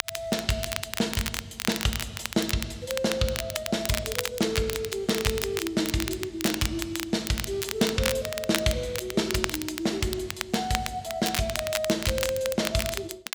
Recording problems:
crackling; vinyl, SNR 4 dB

